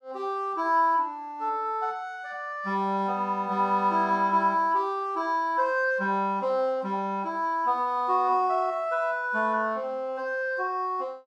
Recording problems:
none

